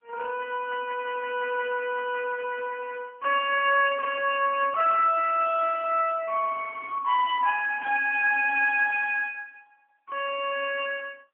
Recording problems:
telephone audio; 410 Hz to 3.1 kHz, AMR-NB

